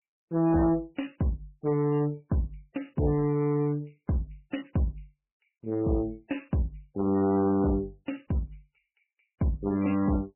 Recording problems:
codec artefacts; MP3, log-spectral distance 6 dB, nothing above 2.9 kHz
distorted audio; hard clipping, uneven, signal-to-distortion ratio 11 dB

